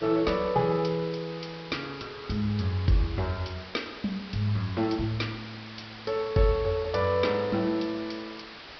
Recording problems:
treble missing; nothing above 5.5 kHz
background hiss; SNR 14 dB

